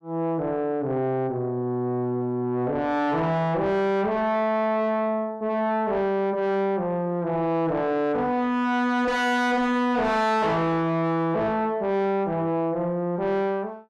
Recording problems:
distortion; soft clipping, signal-to-distortion ratio 6 dB

